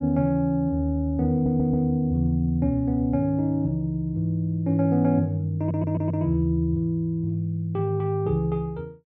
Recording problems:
audio stuttering; at 1.5 s and at 5.5 s

